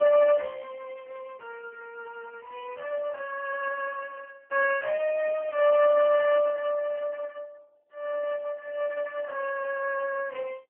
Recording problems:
telephone audio; 410 Hz to 2.7 kHz, AMR-NB

